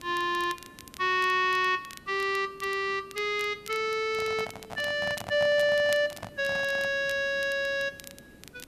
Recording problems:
background hiss; SNR 26 dB
crackle; vinyl, SNR 20 dB
microphone handling noise; from 4 to 7 s; peak -7 dB vs average level

